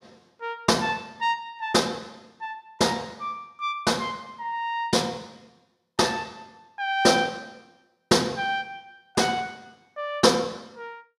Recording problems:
none

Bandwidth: 15 kHz